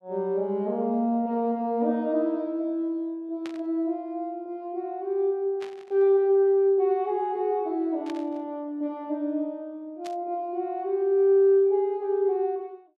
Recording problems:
burst of static; 4 times, first at 3.5 s; peak -11 dB vs average level

